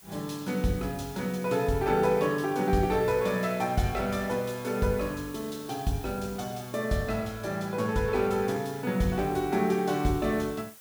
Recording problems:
hiss; slope 0 dB per octave, SNR 20 dB

